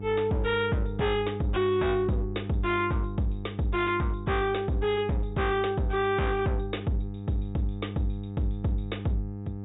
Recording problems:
treble missing; nothing above 4 kHz
distortion; hard clipping, signal-to-distortion ratio 8 dB
hum; 50 Hz, harmonics up to 800 Hz, SNR 9 dB

